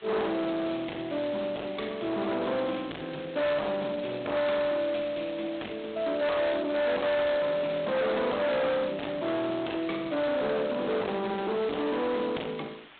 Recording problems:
phone line; 600 Hz to 3.8 kHz, G.726
distortion; hard clipping, signal-to-distortion ratio 7 dB
hiss; SNR 23 dB

